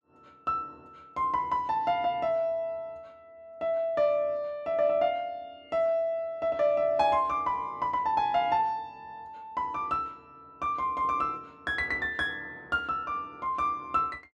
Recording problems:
none

